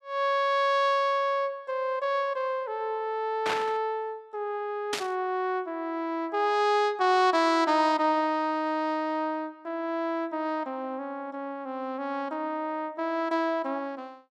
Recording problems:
burst of static; at 3.5 s and at 5 s; peak +2 dB vs average level

